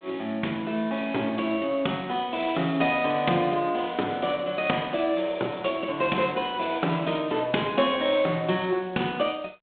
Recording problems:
telephone audio; 240 Hz to 3.6 kHz, G.726

